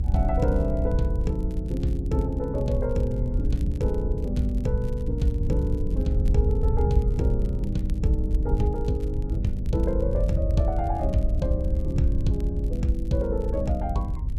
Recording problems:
low-frequency rumble; below 80 Hz, SNR -1 dB
crackle; vinyl, SNR 29 dB

